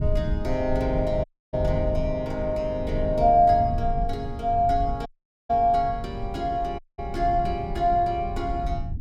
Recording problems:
low-frequency rumble; below 100 Hz, SNR 8 dB
dropout; at 1 s, at 5 s and at 7 s

